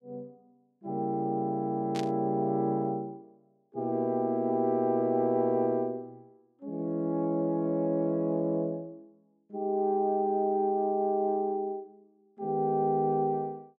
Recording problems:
static burst; at 2 s; peak -7 dB vs average level

